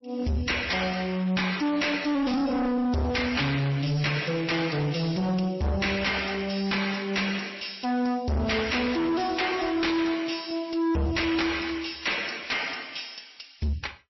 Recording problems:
lossy codec; MP3, then MP3, log-spectral distance 8 dB, nothing above 5.7 kHz
distorted audio; hard clipping, signal-to-distortion ratio 6 dB

